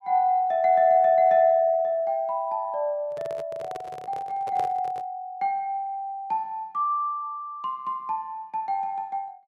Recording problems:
microphone handling noise; from 3 to 5 s; peak -8 dB vs average level

